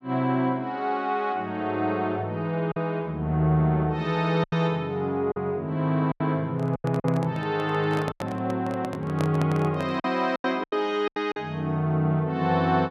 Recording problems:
packet loss; 6% of the sound replaced, filled with silence
microphone handling noise; from 6.5 to 10 s; peak -1 dB vs average level

